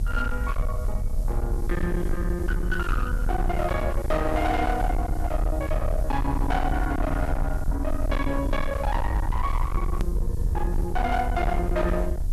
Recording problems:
distorted audio; hard clipping, uneven, signal-to-distortion ratio 7 dB
electrical hum; 50 Hz, harmonics up to 900 Hz, SNR 16 dB
background hiss; SNR 23 dB
low-frequency rumble; below 70 Hz, SNR 0 dB
click at an edit; at 10 s

